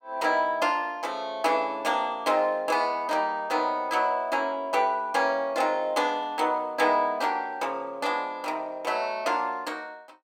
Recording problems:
none

